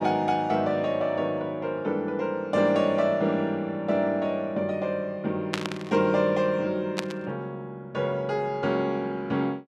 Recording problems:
burst of static; at 5.5 s and at 7 s; peak +2 dB vs average level

